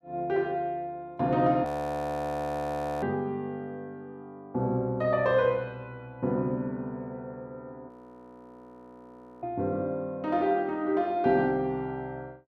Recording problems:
audio freezing; at 1.5 s for 1.5 s and at 8 s for 1.5 s

